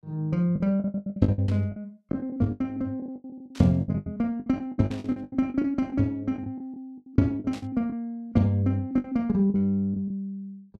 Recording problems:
packet loss; 17% of the sound replaced, filled with the last packet
static burst; 4 times, first at 1.5 s; peak -13 dB vs average level

